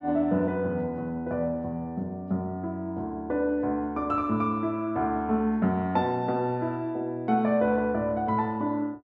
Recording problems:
none

